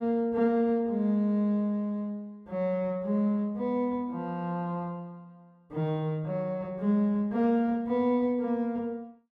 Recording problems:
none

